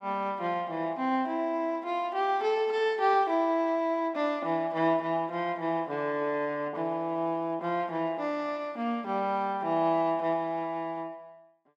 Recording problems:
none

